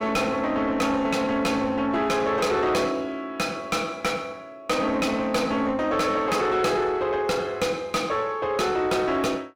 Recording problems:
distorted audio; soft clipping, signal-to-distortion ratio 8 dB

